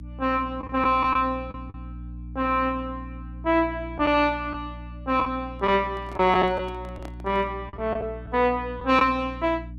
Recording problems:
mains hum; 60 Hz, harmonics up to 300 Hz, SNR 15 dB
lost packets; 5% of the sound replaced, filled with the last packet
handling noise; from 5.5 to 7.5 s; peak -11 dB vs average level

